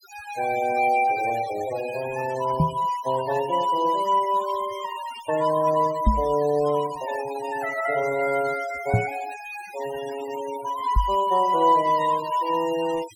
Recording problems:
noise reduction artefacts; signal-to-artefact ratio 17 dB
microphone bump; 4 times, first at 2.5 s; peak +7 dB vs average level

